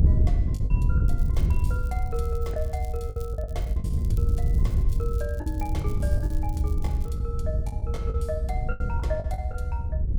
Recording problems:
low-frequency rumble; below 76 Hz, strongest tone 60 Hz, SNR -5 dB
wind noise; below 96 Hz, SNR -8 dB
packet loss; 9% of the sound replaced, filled with the last packet
crackle; from 1 to 7 s; loose cable, SNR 16 dB

